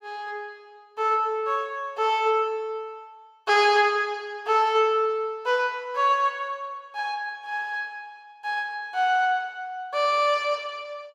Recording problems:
none

